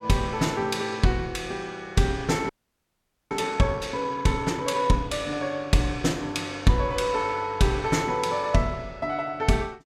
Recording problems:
audio freezing; at 2.5 s for 1 s

